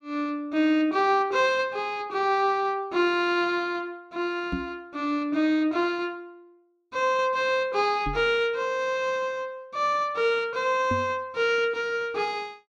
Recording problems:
microphone bump; at 4.5 s, at 8 s and at 11 s; peak -1 dB vs average level

